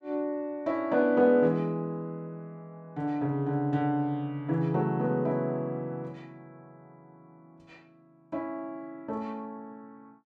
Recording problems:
none

